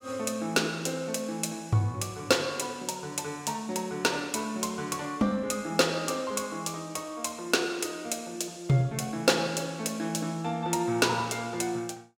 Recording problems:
none

